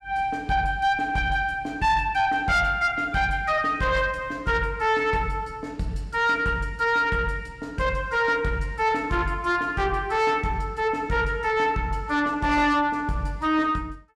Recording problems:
distortion; soft clipping, signal-to-distortion ratio 11 dB

